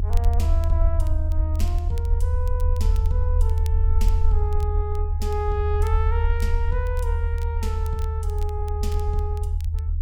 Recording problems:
low-frequency rumble; below 78 Hz, SNR -9 dB
crackle; vinyl, SNR 19 dB

